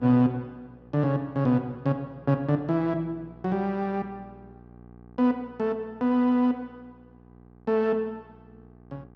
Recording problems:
electrical hum; 60 Hz, harmonics up to 1.6 kHz, SNR 25 dB

